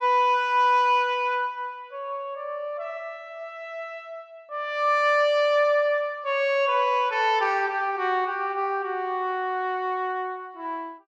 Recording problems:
none

